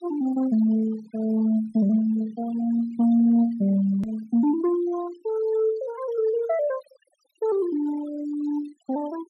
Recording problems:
denoising artefacts; signal-to-artefact ratio 20 dB
hard cut with a click; at 4 s

